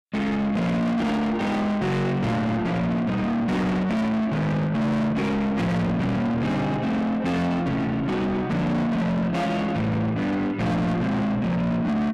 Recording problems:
distortion; soft clipping, signal-to-distortion ratio 6 dB

